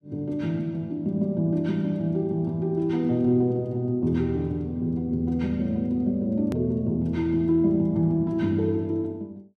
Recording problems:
click at an edit; at 6.5 s

